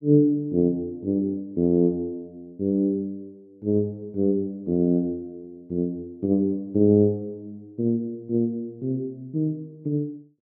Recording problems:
none

